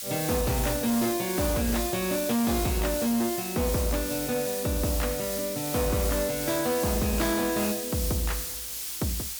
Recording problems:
distorted audio; hard clipping, signal-to-distortion ratio 10 dB
hiss; slope +4 dB per octave, SNR 4 dB

